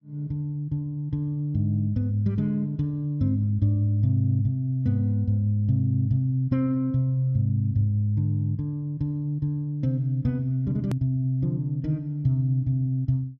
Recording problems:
edit click; at 11 s

